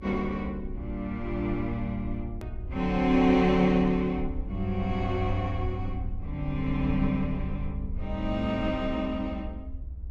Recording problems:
low-frequency rumble; below 68 Hz, SNR 9 dB
click at an edit; at 2.5 s

